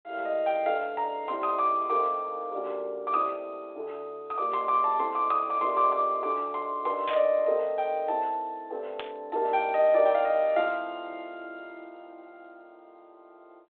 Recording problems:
phone line; 300 Hz to 4 kHz, G.726
burst of static; at 7 s and at 9 s; peak -5 dB vs average level

